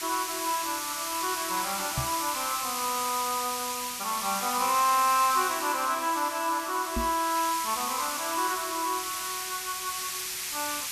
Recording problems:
background hiss; slope +4 dB per octave, SNR 3 dB
microphone bump; at 2 s and at 7 s; peak +1 dB vs average level

